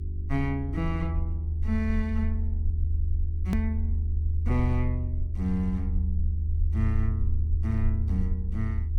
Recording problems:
mains hum; 50 Hz, harmonics up to 400 Hz, SNR 18 dB
rumble; below 80 Hz, strongest tone 78 Hz, SNR -3 dB
hard cut with a click; at 3.5 s

